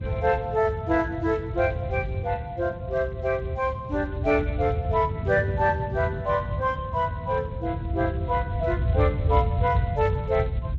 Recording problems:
codec artefacts; Speex, log-spectral distance 2 dB
rumble; below 110 Hz, SNR 5 dB
wind noise; below 160 Hz, SNR 9 dB

